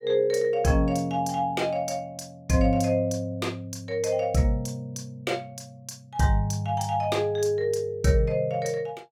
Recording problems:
none

